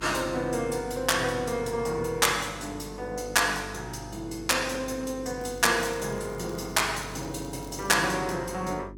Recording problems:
hum; 50 Hz, harmonics up to 400 Hz, SNR 17 dB
crackling; from 5.5 to 8 s; loose cable, SNR 25 dB

